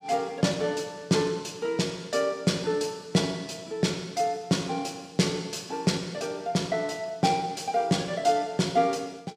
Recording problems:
none

